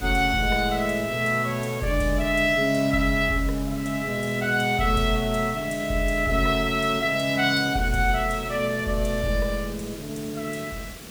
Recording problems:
background hiss; SNR 15 dB

